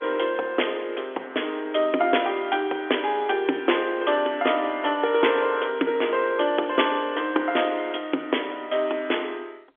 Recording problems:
telephone audio; 260 Hz to 3.5 kHz, G.711

